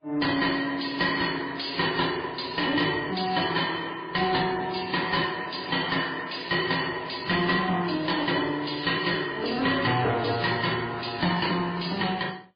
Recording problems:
lossy codec; AAC, then MP3, log-spectral distance 9 dB, nothing above 4.8 kHz
distorted audio; soft clipping, signal-to-distortion ratio 7 dB

